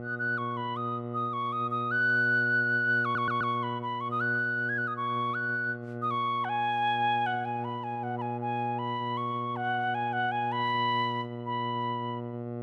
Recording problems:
electrical hum; 60 Hz, harmonics up to 1.3 kHz, SNR 8 dB
stutter; at 3 s

